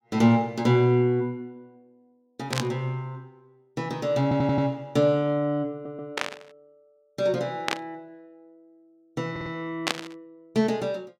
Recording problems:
burst of static; 4 times, first at 2.5 s; peak +4 dB vs average level
audio stuttering; at 4 s, at 5.5 s and at 9.5 s

